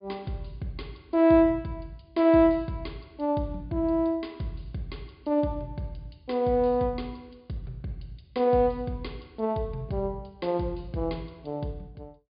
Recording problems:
low-pass filter; nothing above 4.9 kHz

